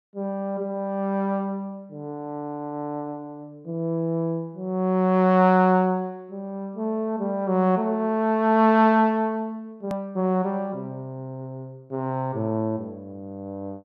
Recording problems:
edit click; at 10 s

